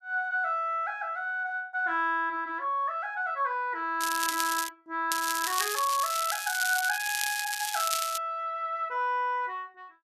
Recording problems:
crackling; at 4 s and from 5 to 8 s; loose cable, SNR 3 dB

